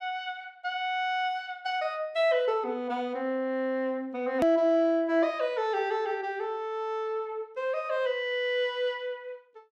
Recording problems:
hard cut with a click; at 4.5 s

